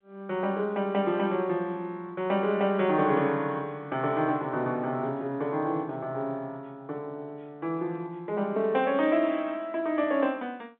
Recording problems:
telephone audio; 150 Hz to 3.9 kHz, G.711

